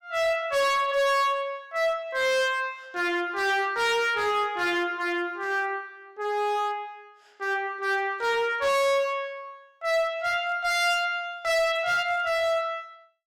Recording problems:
distortion; hard clipping, signal-to-distortion ratio 6 dB

